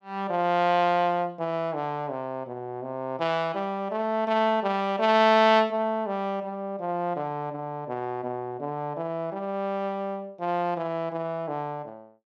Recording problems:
none

